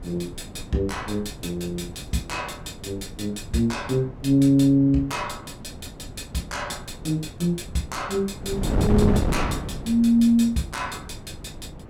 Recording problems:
wind noise; below 300 Hz, SNR 9 dB

